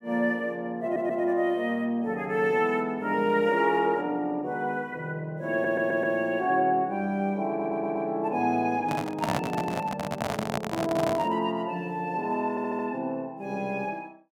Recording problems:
stutter; 4 times, first at 1 s
handling noise; from 9 to 11 s; peak +3 dB vs average level

